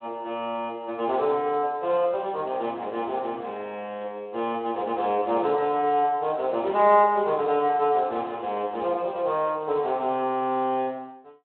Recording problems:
telephone audio; 260 Hz to 3.3 kHz, Speex

